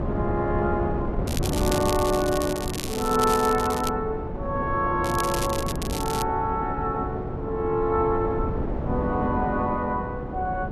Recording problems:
wind on the microphone; below 380 Hz, SNR 4 dB
crackle; from 1.5 to 4 s and from 5 to 6 s; loose cable, SNR 8 dB

